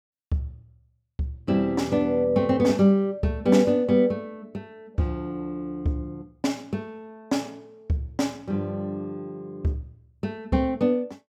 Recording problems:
none

